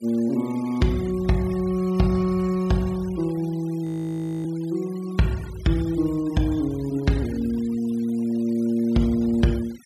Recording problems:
noise reduction artefacts; signal-to-artefact ratio 22 dB
audio freezing; at 4 s for 0.5 s

